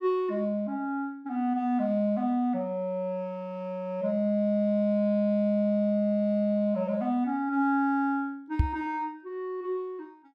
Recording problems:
microphone thump; at 8.5 s; peak +8 dB vs average level

